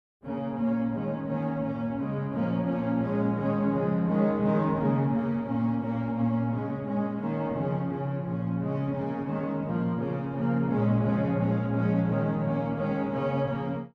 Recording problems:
none

